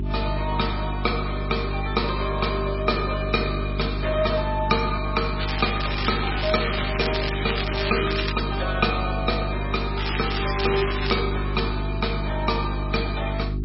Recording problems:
codec artefacts; MP3, log-spectral distance 8 dB, nothing above 5.2 kHz
electrical hum; 50 Hz, harmonics up to 400 Hz, SNR 3 dB
crackling; from 5.5 to 8.5 s and from 10 to 11 s; loose cable, SNR 3 dB

